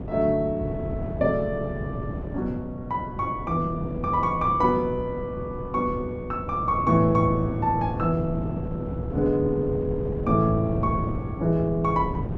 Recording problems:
wind noise; below 280 Hz, SNR 7 dB

